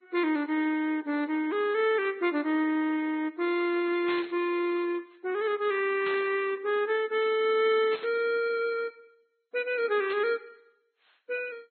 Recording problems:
codec artefacts; MP2, then Vorbis, log-spectral distance 3 dB, nothing above 4.2 kHz
burst of static; 4 times, first at 4 s; peak -7 dB vs average level

